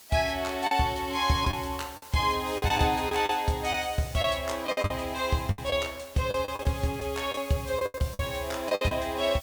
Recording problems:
background hiss; slope 0 dB per octave, SNR 17 dB
packet loss; 10% of the sound replaced, filled with the last packet

